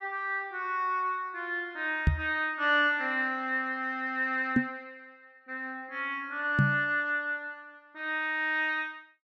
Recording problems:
microphone bump; at 2 s, at 4.5 s and at 6.5 s; peak +9 dB vs average level

